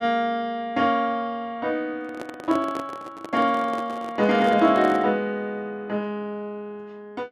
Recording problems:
microphone handling noise; from 2 to 5 s; peak -5 dB vs average level

